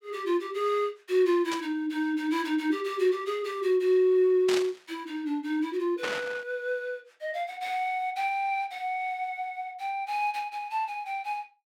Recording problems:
burst of static; at 1.5 s, at 4.5 s and at 6 s; peak 0 dB vs average level

